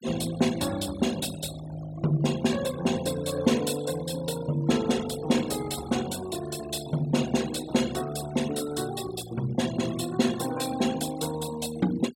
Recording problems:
denoising artefacts; signal-to-artefact ratio 15 dB

